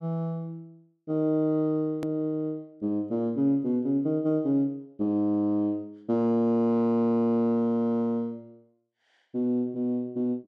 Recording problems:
edit click; at 2 s

